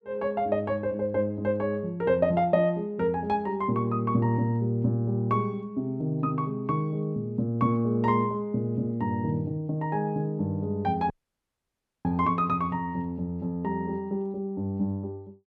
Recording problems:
audio cutting out; at 11 s for 1 s

